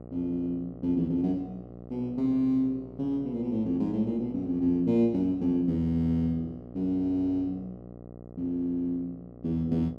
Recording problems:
hum; 60 Hz, harmonics up to 1.2 kHz, SNR 17 dB

